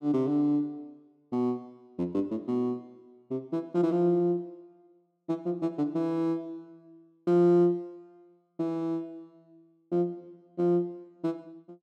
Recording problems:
none

